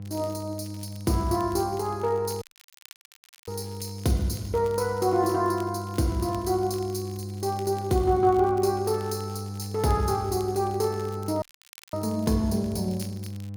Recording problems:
hum; 50 Hz, harmonics up to 500 Hz, SNR 9 dB
crackling; vinyl, SNR 25 dB
audio cutting out; at 2.5 s for 1 s and at 11 s for 0.5 s

